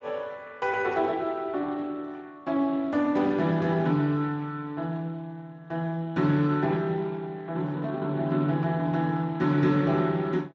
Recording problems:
lossy codec; Speex, log-spectral distance 3 dB

